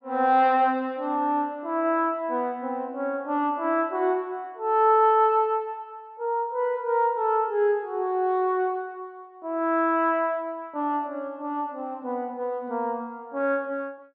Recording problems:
low-pass filter; nothing above 5.5 kHz

